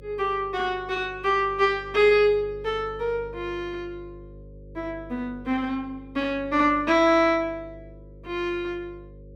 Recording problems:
electrical hum; 50 Hz, harmonics up to 550 Hz, SNR 21 dB

